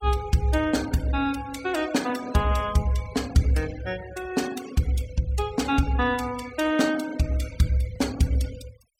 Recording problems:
denoising artefacts; signal-to-artefact ratio 18 dB

